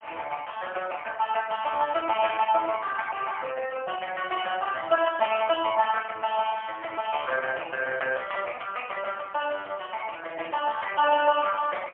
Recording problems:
telephone audio; 340 Hz to 2.9 kHz, AMR-NB, then MP3

